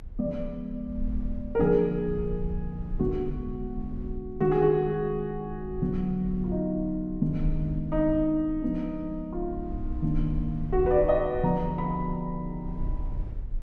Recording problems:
low-frequency rumble; below 60 Hz, strongest tone 28 Hz, SNR 10 dB

